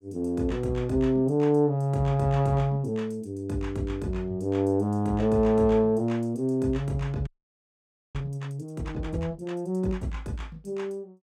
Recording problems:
audio freezing; at 7.5 s for 1 s

